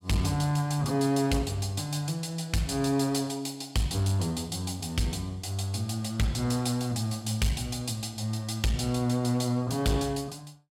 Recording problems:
distortion; hard clipping, uneven, signal-to-distortion ratio 11 dB

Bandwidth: 16 kHz